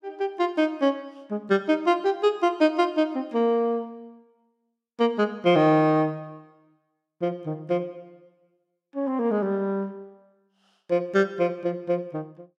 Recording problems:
none

